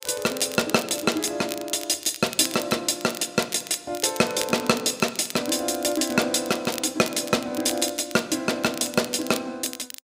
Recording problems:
crackling; vinyl, SNR 12 dB

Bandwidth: 15.5 kHz